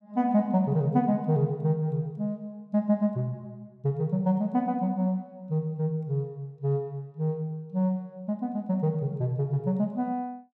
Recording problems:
none

